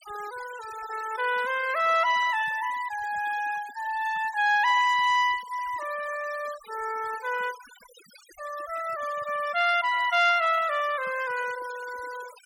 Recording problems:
denoising artefacts; signal-to-artefact ratio 18 dB

